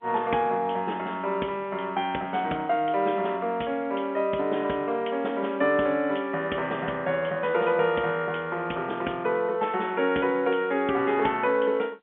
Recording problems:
telephone audio; 220 Hz to 3.4 kHz, G.711

